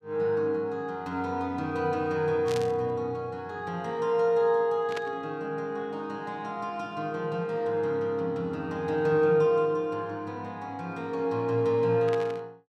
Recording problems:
static burst; at 2.5 s, at 5 s and at 12 s; peak -4 dB vs average level

